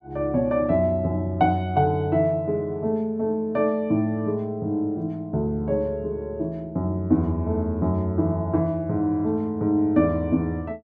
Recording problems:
none

